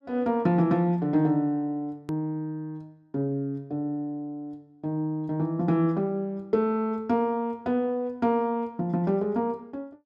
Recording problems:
edit click; at 2 s

